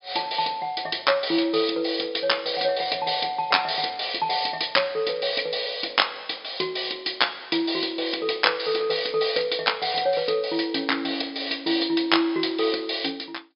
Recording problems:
treble cut off; nothing above 5.5 kHz

